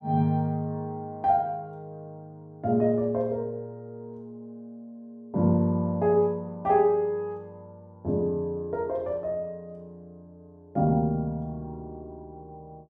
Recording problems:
none

